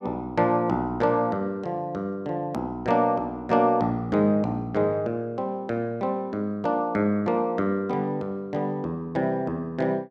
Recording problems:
edit click; at 2.5 s

